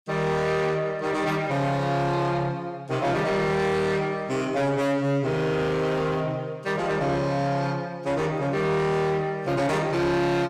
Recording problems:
distorted audio; soft clipping, signal-to-distortion ratio 10 dB

